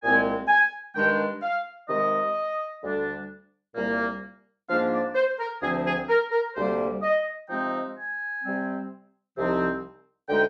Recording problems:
none

